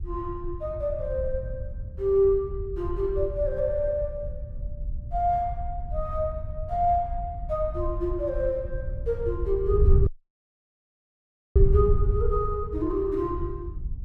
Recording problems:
wind on the microphone; below 82 Hz, SNR 3 dB
audio cutting out; at 10 s for 1.5 s

